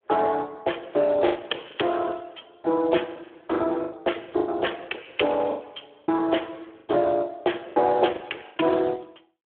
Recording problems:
phone line; 260 Hz to 3.4 kHz, Speex
packet loss; 8% of the sound replaced, filled with the last packet

